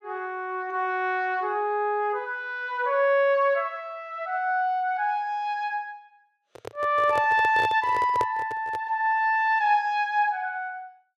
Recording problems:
microphone handling noise; from 6.5 to 9 s; peak -2 dB vs average level

